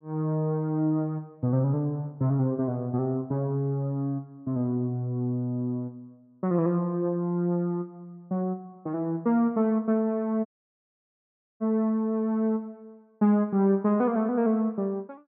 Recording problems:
audio cutting out; at 10 s for 1 s

